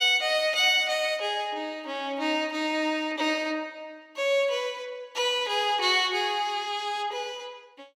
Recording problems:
none

